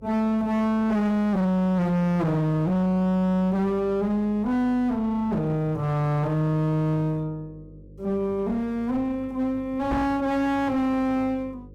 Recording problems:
distorted audio; hard clipping, uneven, signal-to-distortion ratio 6 dB
hum; 50 Hz, harmonics up to 550 Hz, SNR 23 dB
microphone thump; at 10 s; peak 0 dB vs average level

